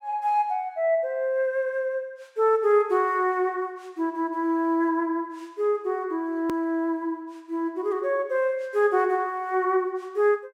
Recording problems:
hard cut with a click; at 6.5 s

